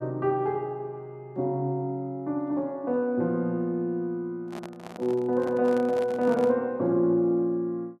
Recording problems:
microphone handling noise; from 4.5 to 6.5 s; peak -8 dB vs average level

